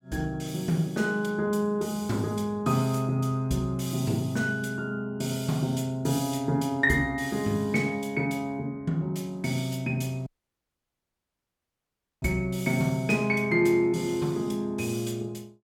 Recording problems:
dropout; at 10 s for 2 s

